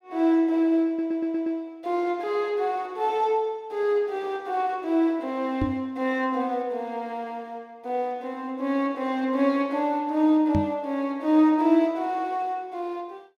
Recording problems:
audio stuttering; at 1 s
knock on the microphone; at 5.5 s and at 11 s; peak +3 dB vs average level

